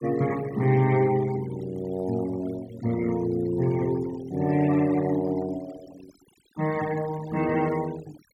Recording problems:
denoising artefacts; signal-to-artefact ratio 19 dB

